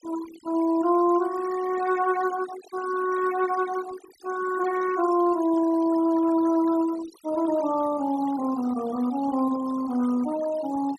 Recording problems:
noise reduction artefacts; signal-to-artefact ratio 16 dB

